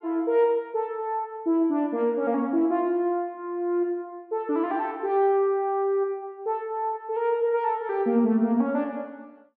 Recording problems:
none

